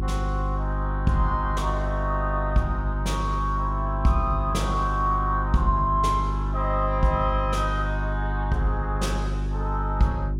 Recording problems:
mains hum; 50 Hz, harmonics up to 400 Hz, SNR 2 dB

